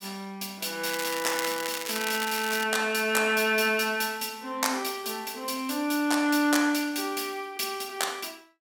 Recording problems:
crackle; from 1 to 2.5 s; loose cable, SNR 7 dB

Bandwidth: 17 kHz